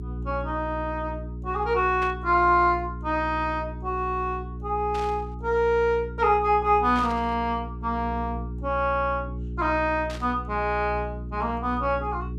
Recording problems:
hum; 60 Hz, harmonics up to 420 Hz, SNR 10 dB
burst of static; 4 times, first at 2 s; peak -9 dB vs average level

